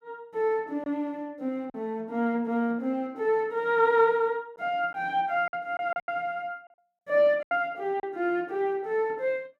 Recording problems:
packet loss; 4% of the sound replaced, filled with silence

